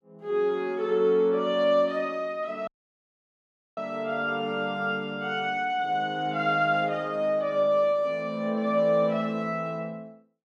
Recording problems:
audio cutting out; at 2.5 s for 1 s

